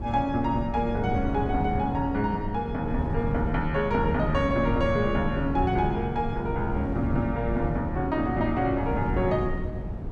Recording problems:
wind on the microphone; below 210 Hz, SNR 4 dB

